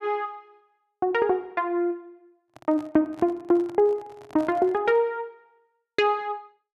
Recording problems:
microphone handling noise; from 2.5 to 5 s; peak -13 dB vs average level

